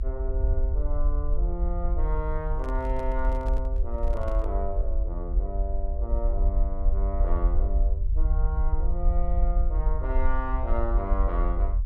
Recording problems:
low-frequency rumble; below 52 Hz, SNR -7 dB
handling noise; from 2.5 to 4.5 s; peak -5 dB vs average level

